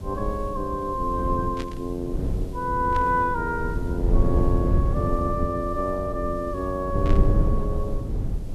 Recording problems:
background hiss; slope +3 dB per octave, SNR 28 dB
low-frequency rumble; below 120 Hz, SNR 1 dB
static burst; at 1.5 s, at 3 s and at 7 s; peak -7 dB vs average level

